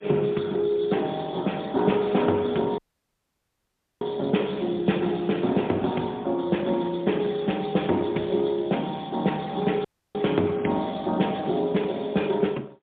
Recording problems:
phone line; 150 Hz to 3.6 kHz, AMR-NB, then MP3
dropout; at 3 s for 1 s and at 10 s

